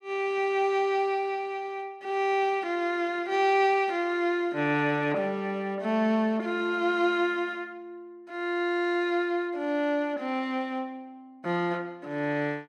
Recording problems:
none

